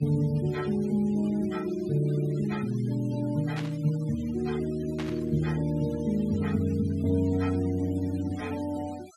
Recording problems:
noise reduction artefacts; signal-to-artefact ratio 21 dB
static burst; at 3.5 s and at 5 s; peak -6 dB vs average level

